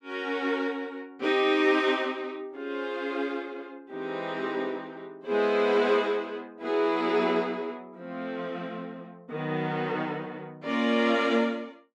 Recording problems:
none

